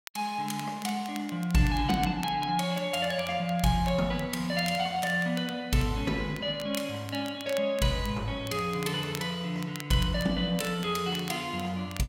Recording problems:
crackle; vinyl, SNR 17 dB

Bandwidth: 16 kHz